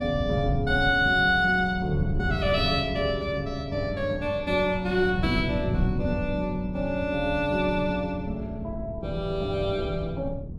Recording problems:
wind noise; below 160 Hz, SNR 8 dB

